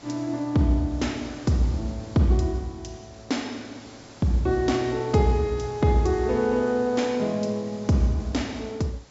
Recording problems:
treble missing; nothing above 8 kHz
background hiss; slope -3 dB per octave, SNR 23 dB

